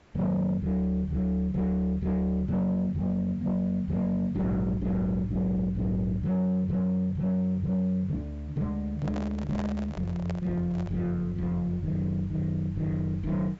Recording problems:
low-pass filter; nothing above 8 kHz
distorted audio; soft clipping, signal-to-distortion ratio 11 dB
hiss; slope -5 dB per octave, SNR 29 dB
microphone handling noise; from 9 to 11 s; peak -5 dB vs average level

